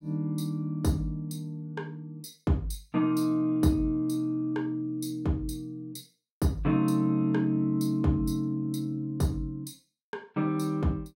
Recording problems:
none

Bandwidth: 16 kHz